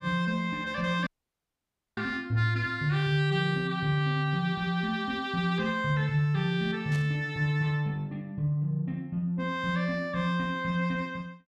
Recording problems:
audio cutting out; at 1 s for 1 s
burst of static; at 7 s; peak -11 dB vs average level

